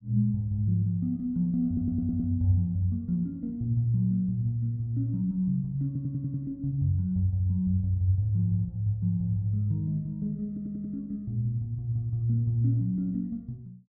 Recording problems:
stutter; at 1.5 s, at 6 s and at 10 s

